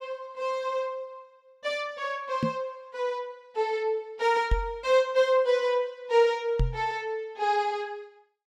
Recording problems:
knock on the microphone; at 2.5 s, at 4.5 s and at 6.5 s; peak +5 dB vs average level

